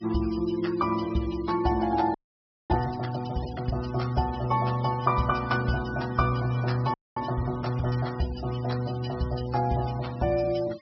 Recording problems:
low-pass filter; nothing above 5.6 kHz
noise reduction artefacts; signal-to-artefact ratio 17 dB
audio freezing; at 2 s for 0.5 s and at 7 s

